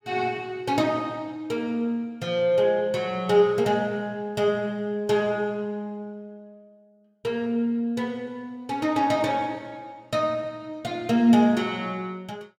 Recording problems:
none

